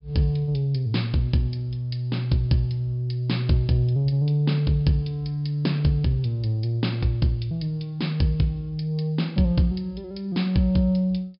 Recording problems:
treble cut off; nothing above 5.5 kHz

